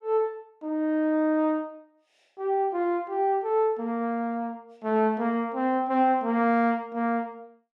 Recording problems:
none

